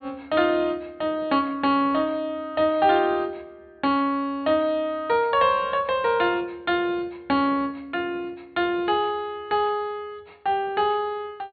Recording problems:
low-pass filter; nothing above 4.5 kHz

